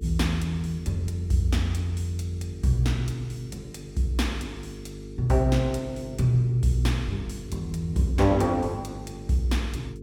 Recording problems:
electrical hum; 50 Hz, harmonics up to 450 Hz, SNR 15 dB

